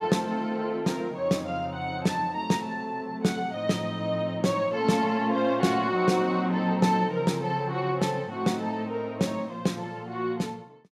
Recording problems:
none

